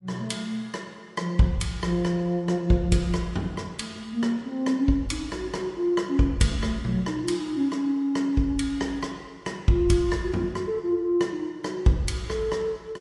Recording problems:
lossy compression; MP3, log-spectral distance 2 dB, nothing above 11 kHz

